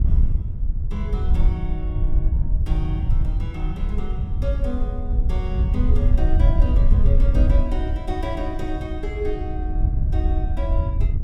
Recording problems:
wind noise; below 68 Hz, SNR -9 dB

